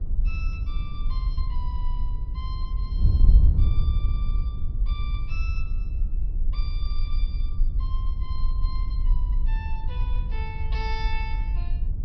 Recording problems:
low-pass filter; nothing above 5.5 kHz
rumble; below 42 Hz, strongest tone 20 Hz, SNR -7 dB
wind on the microphone; below 68 Hz, SNR -13 dB

